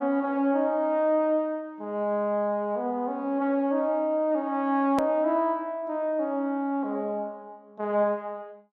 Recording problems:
low-pass filter; nothing above 8 kHz
hard cut with a click; at 5 s

